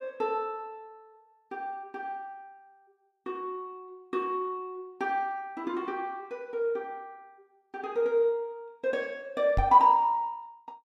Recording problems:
microphone thump; at 9.5 s; peak +3 dB vs average level

